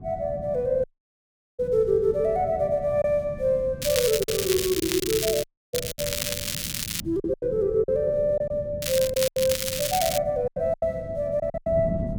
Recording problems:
wind on the microphone; below 210 Hz, SNR 13 dB
lost packets; 7% of the sound replaced, filled with silence
dropout; at 1 s for 0.5 s and at 5.5 s
crackling; from 4 to 5.5 s, from 5.5 to 7 s and from 9 to 10 s; loose cable, SNR 3 dB

